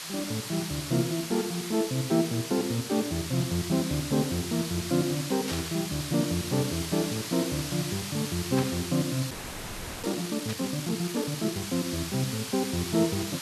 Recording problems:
hiss; slope +2 dB per octave, SNR 6 dB
static burst; at 5.5 s, at 8.5 s and at 10 s; peak -3 dB vs average level
frozen audio; at 9.5 s for 0.5 s

